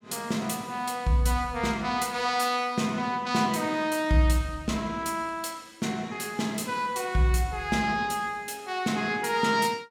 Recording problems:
none

